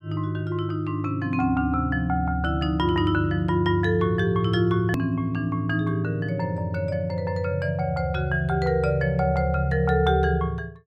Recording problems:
click at an edit; at 5 s

